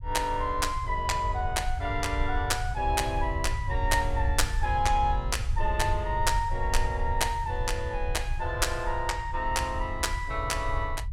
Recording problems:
low-frequency rumble; below 74 Hz, SNR 4 dB

